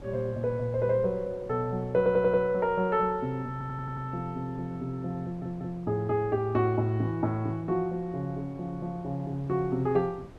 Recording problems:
wind on the microphone; below 460 Hz, SNR 21 dB
audio stuttering; at 2 s, at 3.5 s and at 5 s

